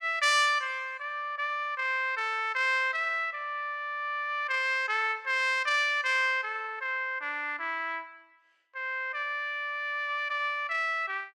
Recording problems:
none

